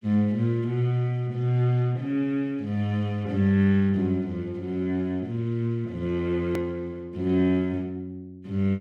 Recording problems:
click at an edit; at 6.5 s

